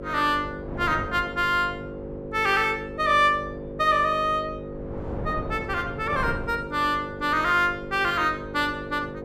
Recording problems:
hum; 50 Hz, harmonics up to 550 Hz, SNR 12 dB
wind noise; below 460 Hz, SNR 16 dB

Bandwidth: 14 kHz